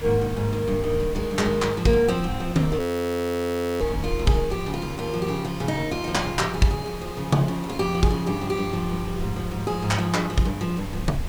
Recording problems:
hiss; slope -4 dB per octave, SNR 14 dB
wind noise; below 100 Hz, SNR 13 dB
frozen audio; at 3 s for 1 s

